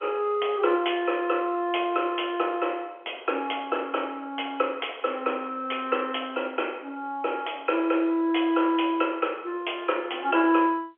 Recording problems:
phone line; 280 Hz to 3.3 kHz, G.711

